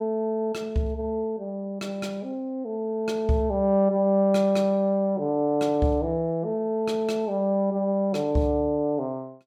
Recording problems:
none

